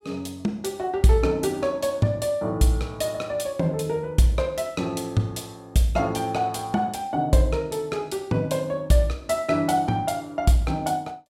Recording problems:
none

